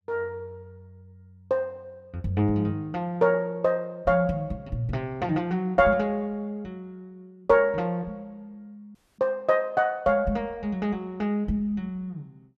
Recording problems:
audio cutting out; at 9 s

